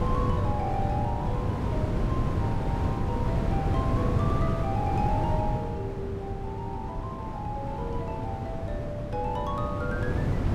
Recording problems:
wind noise; below 260 Hz, SNR -5 dB

